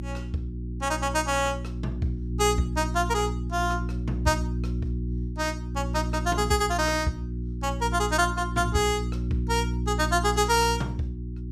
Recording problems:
hum; 60 Hz, harmonics up to 360 Hz, SNR 4 dB

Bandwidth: 15.5 kHz